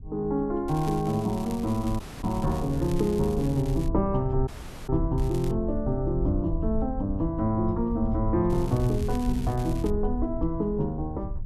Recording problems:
rumble; below 76 Hz, SNR 7 dB
crackle; from 0.5 to 4 s, at 5 s and from 8.5 to 10 s; loose cable, SNR 20 dB
audio cutting out; at 2 s and at 4.5 s

